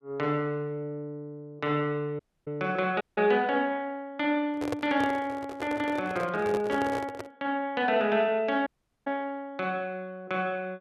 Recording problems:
audio cutting out; at 2 s, at 3 s and at 8.5 s
handling noise; from 4.5 to 7.5 s; peak +1 dB vs average level

